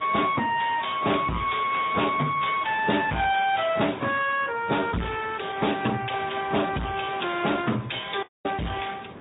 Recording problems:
treble cut off; nothing above 3.7 kHz
lossy compression; Speex, then AAC, log-spectral distance 6 dB
distorted audio; soft clipping, signal-to-distortion ratio 6 dB
hiss; SNR 19 dB
audio cutting out; at 8 s

